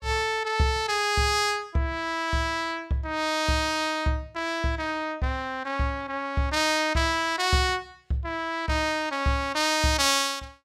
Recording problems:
none

